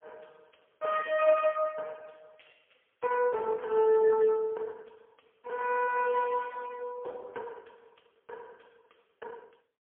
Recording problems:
telephone audio; 340 Hz to 2.9 kHz, AMR-NB, then MP3

